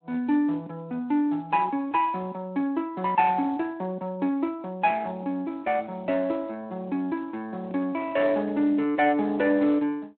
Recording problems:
phone line; 220 Hz to 3.3 kHz, Speex

